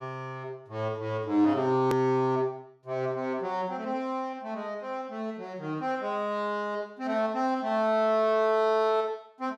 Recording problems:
click at an edit; at 2 s

